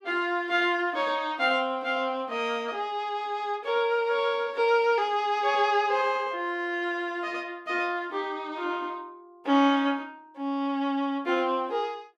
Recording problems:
none

